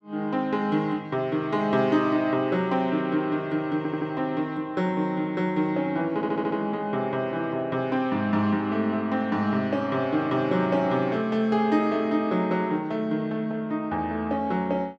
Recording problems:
audio stuttering; at 4 s and at 6 s

